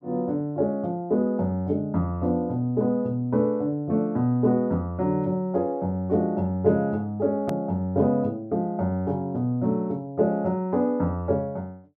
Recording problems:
hard cut with a click; at 7.5 s

